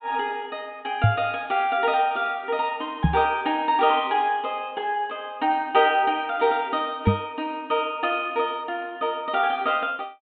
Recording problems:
treble cut off; nothing above 4 kHz
microphone bump; at 1 s, at 3 s and at 7 s; peak +8 dB vs average level

